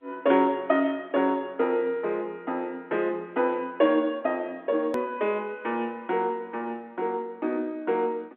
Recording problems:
phone line; 220 Hz to 3.4 kHz, G.711
click at an edit; at 5 s

